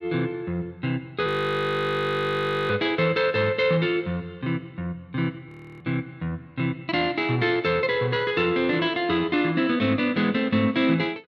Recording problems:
frozen audio; at 1.5 s for 1.5 s and at 5.5 s

